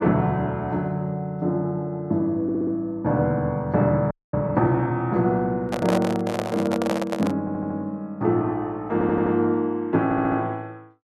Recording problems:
stutter; 4 times, first at 2.5 s
frozen audio; at 4 s
handling noise; from 5.5 to 7.5 s; peak +2 dB vs average level

